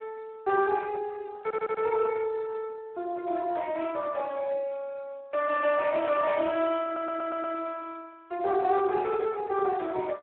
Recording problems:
phone line; 340 Hz to 3 kHz, Speex
audio stuttering; at 1.5 s and at 7 s

